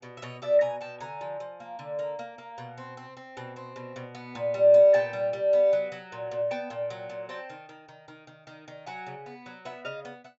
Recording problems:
low-pass filter; nothing above 8 kHz

